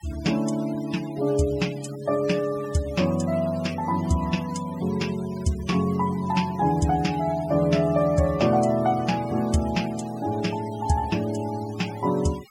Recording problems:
denoising artefacts; signal-to-artefact ratio 18 dB

